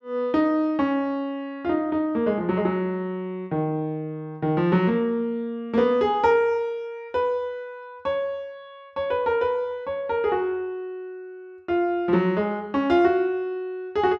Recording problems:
none

